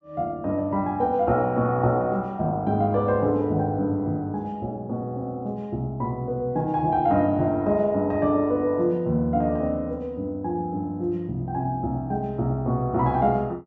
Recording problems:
none

